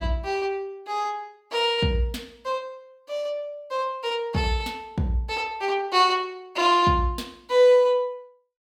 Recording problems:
none

